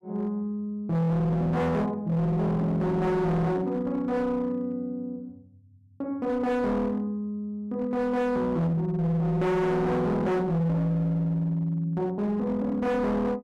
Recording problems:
distorted audio; hard clipping, signal-to-distortion ratio 8 dB

